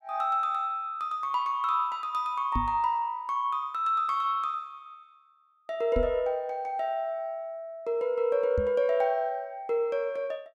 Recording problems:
knock on the microphone; at 2.5 s, at 6 s and at 8.5 s; peak +1 dB vs average level

